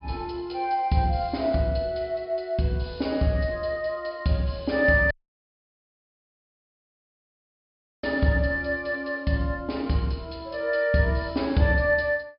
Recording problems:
treble missing; nothing above 5.5 kHz
dropout; at 5 s for 3 s

